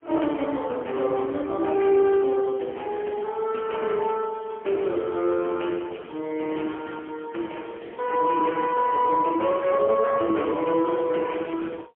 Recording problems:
telephone audio; 240 Hz to 3.2 kHz, AMR-NB, then MP3

